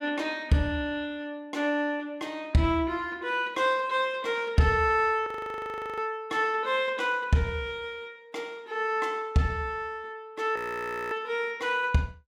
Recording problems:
audio freezing; at 5.5 s for 0.5 s and at 11 s for 0.5 s

